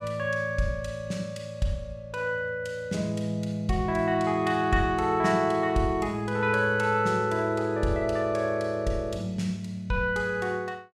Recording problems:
none

